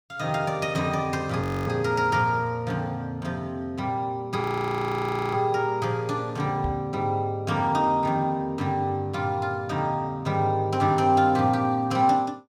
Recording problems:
audio freezing; at 1.5 s and at 4.5 s for 1 s
microphone thump; at 6.5 s; peak -2 dB vs average level

